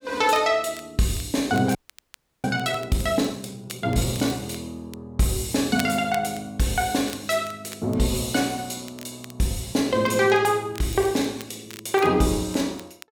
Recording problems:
crackling; vinyl, SNR 20 dB
frozen audio; at 2 s for 0.5 s

